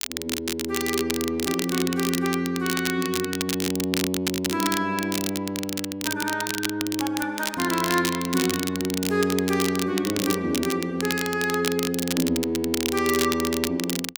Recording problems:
crackle; vinyl, SNR 4 dB

